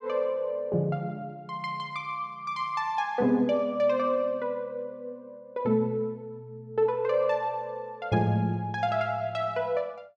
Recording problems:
none

